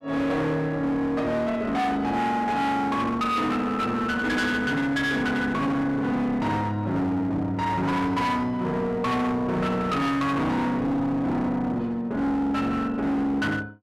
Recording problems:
distorted audio; hard clipping, uneven, signal-to-distortion ratio 7 dB

